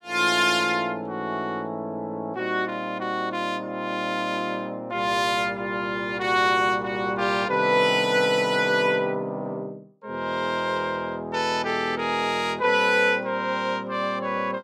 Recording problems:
none

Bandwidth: 16.5 kHz